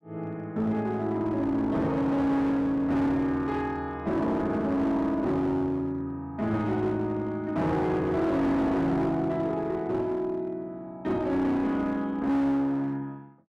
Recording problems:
distorted audio; hard clipping, uneven, signal-to-distortion ratio 10 dB

